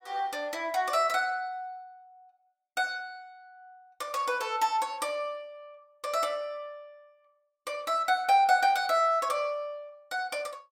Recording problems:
none

